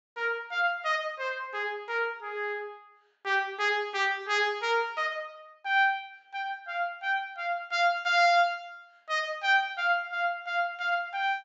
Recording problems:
treble missing; nothing above 8 kHz

